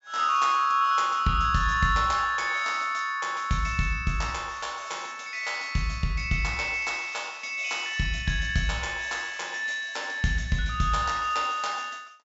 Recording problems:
low-pass filter; nothing above 8 kHz

